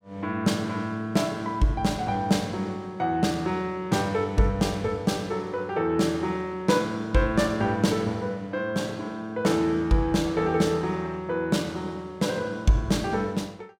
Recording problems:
none

